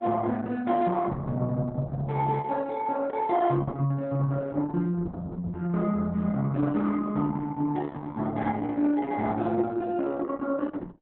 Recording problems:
codec artefacts; Opus, log-spectral distance 3 dB

